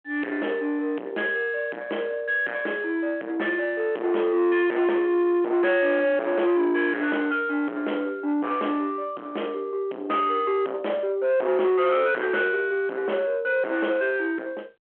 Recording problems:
phone line; 560 Hz to 3.3 kHz, G.726
distortion; soft clipping, signal-to-distortion ratio 7 dB

